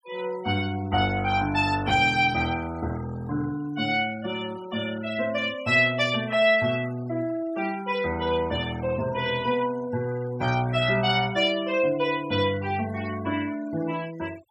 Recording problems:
noise reduction artefacts; signal-to-artefact ratio 20 dB

